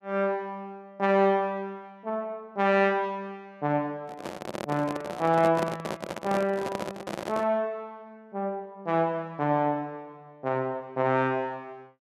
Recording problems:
handling noise; from 4 to 7.5 s; peak 0 dB vs average level

